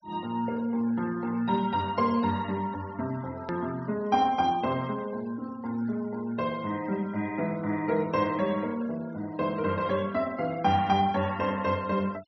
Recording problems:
low-pass filter; nothing above 5.8 kHz
denoising artefacts; signal-to-artefact ratio 23 dB
edit click; at 3.5 s

